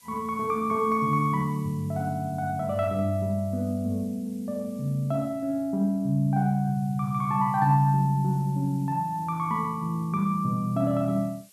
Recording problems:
hiss; SNR 28 dB

